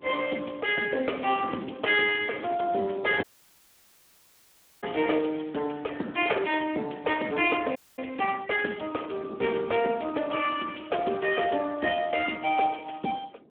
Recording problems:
telephone audio; 240 Hz to 3.2 kHz, Speex
wind noise; below 430 Hz, SNR 18 dB
audio cutting out; at 3 s for 1.5 s and at 8 s

